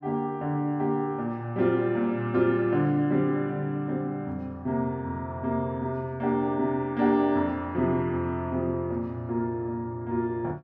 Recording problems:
none

